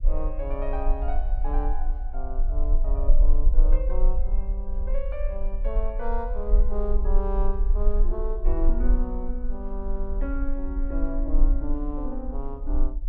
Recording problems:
rumble; below 38 Hz, strongest tone 18 Hz, SNR -7 dB

